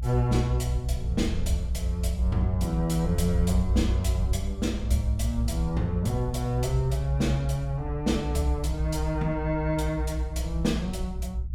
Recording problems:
rumble; below 64 Hz, strongest tone 62 Hz, SNR 2 dB

